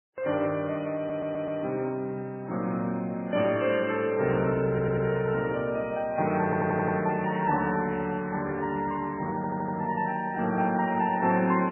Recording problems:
lossy codec; MP3, then Vorbis, log-spectral distance 3 dB, nothing above 2.5 kHz
stutter; 4 times, first at 1 s

